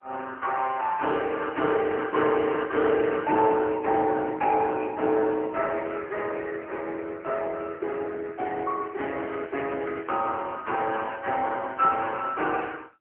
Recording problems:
phone line; 280 Hz to 3.2 kHz, AMR-NB

